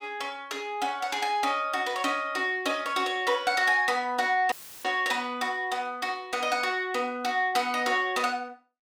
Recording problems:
audio cutting out; at 4.5 s; filled with static

